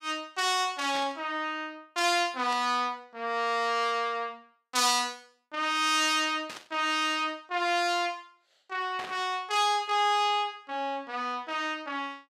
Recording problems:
static burst; 4 times, first at 1 s; peak -8 dB vs average level

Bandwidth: 15.5 kHz